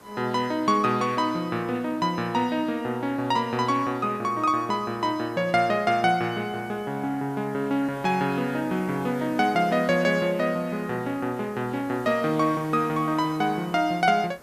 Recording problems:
background hiss; SNR 22 dB

